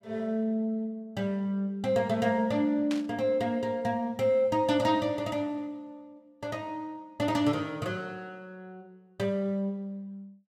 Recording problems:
burst of static; at 3 s; peak -5 dB vs average level

